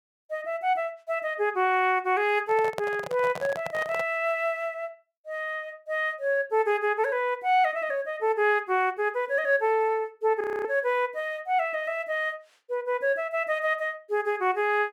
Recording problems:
handling noise; from 2.5 to 4 s; peak -2 dB vs average level
frozen audio; at 10 s

